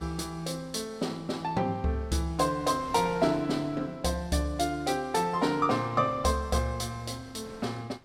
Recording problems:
wind on the microphone; below 1.3 kHz, SNR 22 dB

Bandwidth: 16.5 kHz